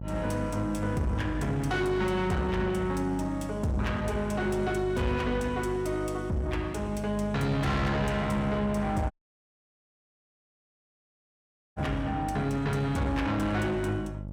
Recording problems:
distortion; soft clipping, signal-to-distortion ratio 7 dB
hum; 50 Hz, harmonics up to 650 Hz, SNR 9 dB
dropout; at 9 s for 2.5 s

